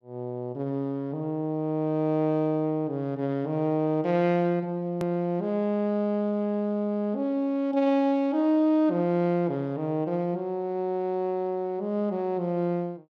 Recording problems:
click at an edit; at 5 s

